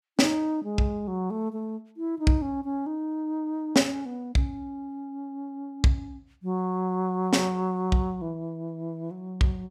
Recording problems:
none

